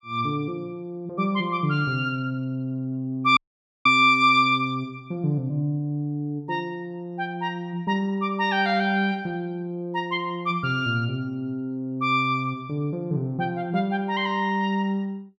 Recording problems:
audio cutting out; at 3.5 s

